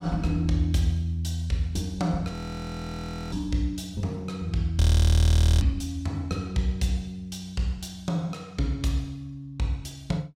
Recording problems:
audio freezing; at 2.5 s for 1 s and at 5 s for 1 s

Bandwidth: 16 kHz